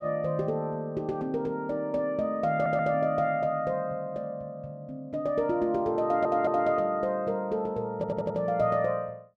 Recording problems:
stutter; at 2.5 s, at 6 s and at 8 s

